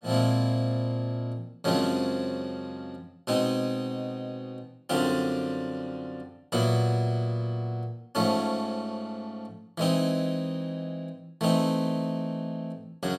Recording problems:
none

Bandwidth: 16.5 kHz